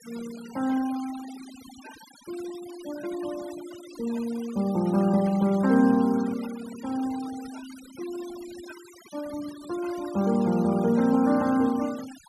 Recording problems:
denoising artefacts; signal-to-artefact ratio 20 dB

